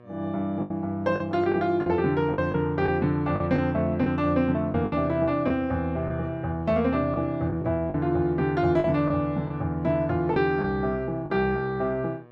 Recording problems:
hum; 60 Hz, harmonics up to 1.8 kHz, SNR 26 dB
lost packets; 6% of the sound replaced, filled with the last packet

